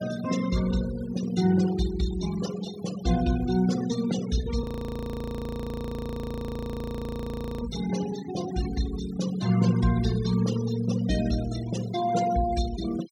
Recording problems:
denoising artefacts; signal-to-artefact ratio 11 dB
audio freezing; at 4.5 s for 3 s

